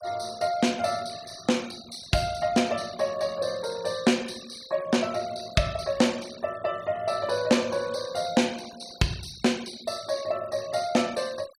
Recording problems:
noise reduction artefacts; signal-to-artefact ratio 18 dB

